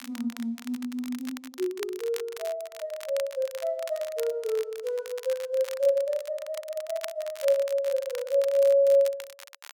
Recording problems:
crackling; vinyl, SNR 16 dB

